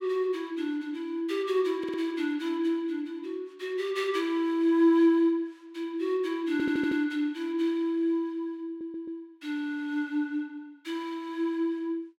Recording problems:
audio stuttering; at 2 s, at 6.5 s and at 8.5 s

